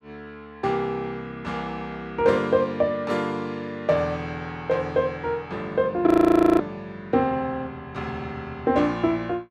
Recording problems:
frozen audio; at 6 s for 0.5 s

